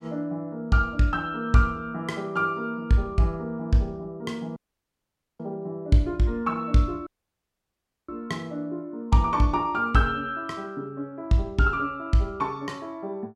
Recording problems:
dropout; at 4.5 s for 1 s and at 7 s for 1 s

